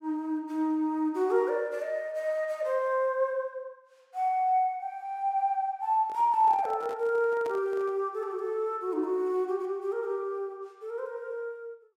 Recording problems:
microphone handling noise; from 6 to 8 s; peak -9 dB vs average level

